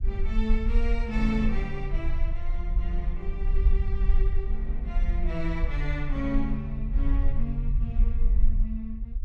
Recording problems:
rumble; below 46 Hz, strongest tone 22 Hz, SNR -5 dB

